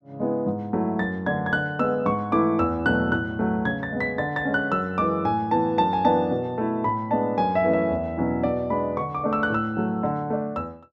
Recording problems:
none

